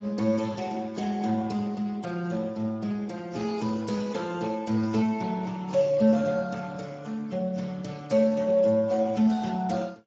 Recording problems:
lossy codec; AAC, then Speex, log-spectral distance 4 dB

